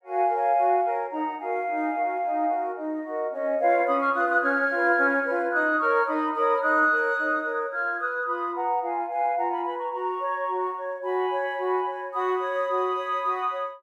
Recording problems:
none

